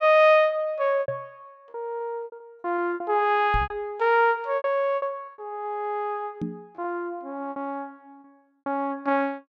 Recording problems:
lost packets; 10% of the sound replaced, filled with repeated pitch periods
microphone thump; at 1 s, at 3.5 s and at 6.5 s; peak -1 dB vs average level

